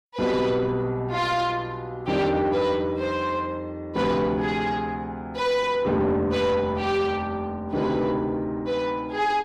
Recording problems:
distortion; soft clipping, signal-to-distortion ratio 9 dB

